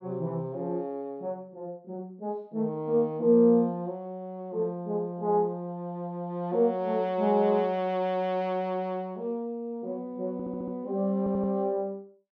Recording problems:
audio stuttering; at 10 s and at 11 s

